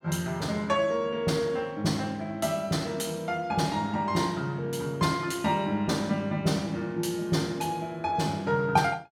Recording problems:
none

